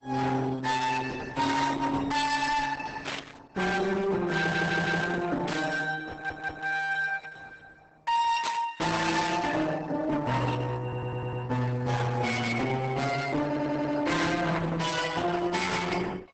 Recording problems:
codec artefacts; Opus, then Opus, log-spectral distance 5 dB, nothing above 8 kHz
distortion; hard clipping, signal-to-distortion ratio 8 dB
burst of static; at 3 s, at 5.5 s and at 8.5 s; peak -2 dB vs average level
stutter; 4 times, first at 4.5 s

